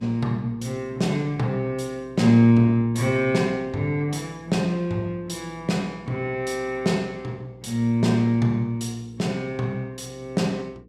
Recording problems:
electrical hum; 60 Hz, harmonics up to 480 Hz, SNR 26 dB

